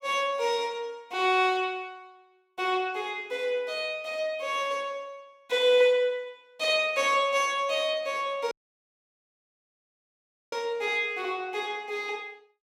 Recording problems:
audio cutting out; at 8.5 s for 2 s

